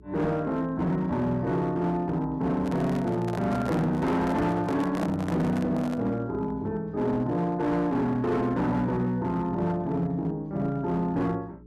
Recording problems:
distortion; hard clipping, signal-to-distortion ratio 12 dB
hum; 60 Hz, harmonics up to 420 Hz, SNR 24 dB
handling noise; from 2.5 to 6 s; peak -2 dB vs average level

